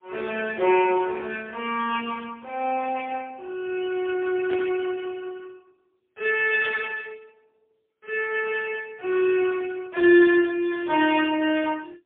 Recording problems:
phone line; 280 Hz to 3.4 kHz, AMR-NB, then MP3
burst of static; at 4.5 s; peak -9 dB vs average level

